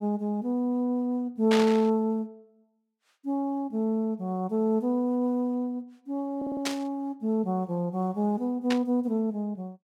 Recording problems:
burst of static; at 1.5 s, at 6.5 s and at 8.5 s; peak +1 dB vs average level
audio stuttering; at 6.5 s

